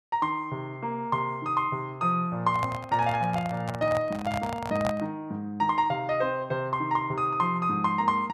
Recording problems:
microphone handling noise; from 2.5 to 5 s; peak 0 dB vs average level

